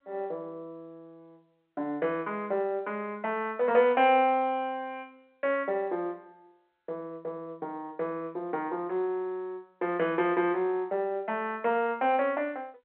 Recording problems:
phone line; 320 Hz to 3.5 kHz, G.711

